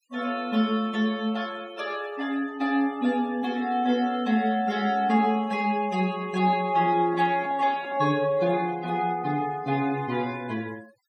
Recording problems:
denoising artefacts; signal-to-artefact ratio 22 dB
microphone handling noise; from 6 to 8 s; peak -13 dB vs average level

